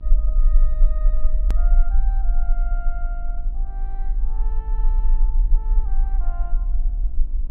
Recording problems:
hum; 50 Hz, harmonics up to 1 kHz, SNR 6 dB
low-frequency rumble; below 38 Hz, strongest tone 24 Hz, SNR -19 dB
hard cut with a click; at 1.5 s

